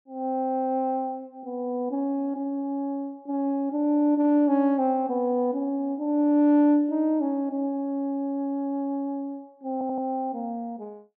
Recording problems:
stutter; at 9.5 s

